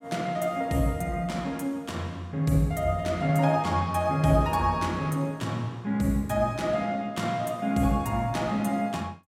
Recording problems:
none

